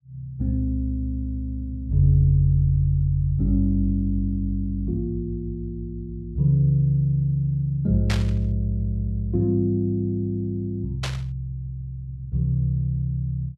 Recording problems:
static burst; at 8 s and at 11 s; peak -2 dB vs average level

